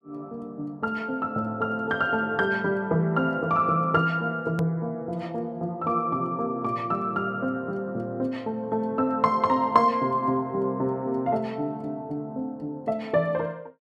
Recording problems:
hard cut with a click; at 4.5 s

